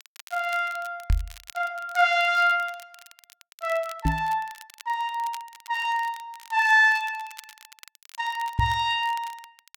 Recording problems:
crackle; vinyl, SNR 22 dB
knock on the microphone; at 1 s, at 4 s and at 8.5 s; peak +4 dB vs average level

